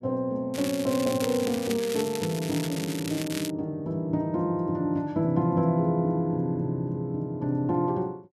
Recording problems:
crackling; from 0.5 to 3.5 s; loose cable, SNR 9 dB

